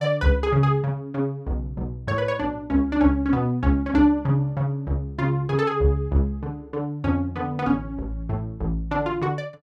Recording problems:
none

